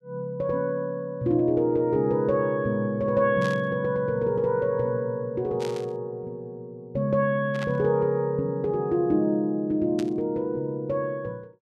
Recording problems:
static burst; 4 times, first at 3.5 s; peak -8 dB vs average level

